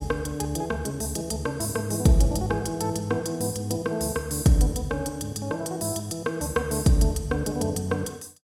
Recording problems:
none

